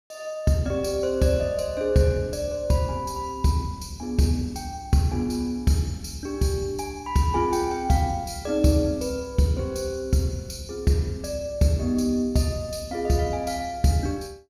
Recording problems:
none

